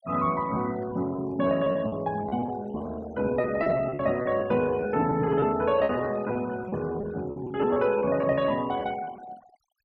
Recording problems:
noise reduction artefacts; signal-to-artefact ratio 19 dB
lost packets; 12% of the sound replaced, filled with repeated pitch periods

